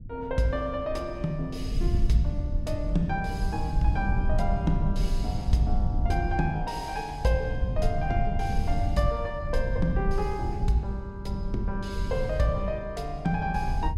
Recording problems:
rumble; below 88 Hz, SNR 1 dB

